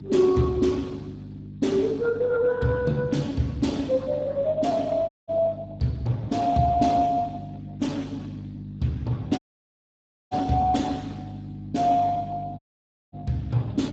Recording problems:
codec artefacts; Speex, log-spectral distance 3 dB, nothing above 7.6 kHz
electrical hum; 50 Hz, harmonics up to 400 Hz, SNR 14 dB
dropout; at 5 s, at 9.5 s for 1 s and at 13 s for 0.5 s

